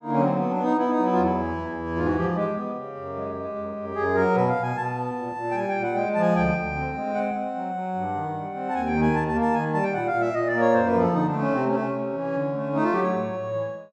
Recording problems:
none

